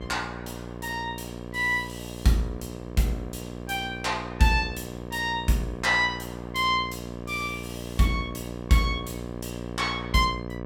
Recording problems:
hum; 60 Hz, harmonics up to 1.8 kHz, SNR 10 dB

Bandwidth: 17 kHz